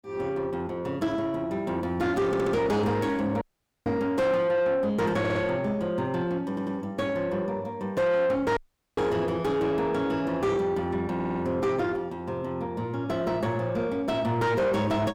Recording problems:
distorted audio; soft clipping, signal-to-distortion ratio 7 dB
stutter; 4 times, first at 2.5 s
audio cutting out; at 3.5 s and at 8.5 s

